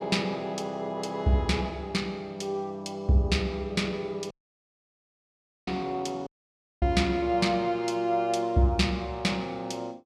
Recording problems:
dropout; at 4.5 s for 1.5 s and at 6.5 s for 0.5 s

